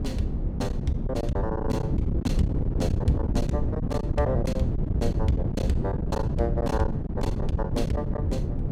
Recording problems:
rumble; below 74 Hz, SNR 10 dB
wind on the microphone; below 200 Hz, SNR -3 dB
lost packets; 14% of the sound replaced, filled with silence

